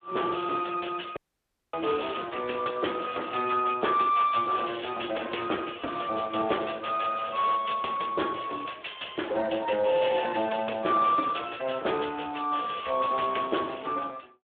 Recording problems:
phone line; 280 Hz to 3.5 kHz, Speex
audio cutting out; at 1 s for 0.5 s

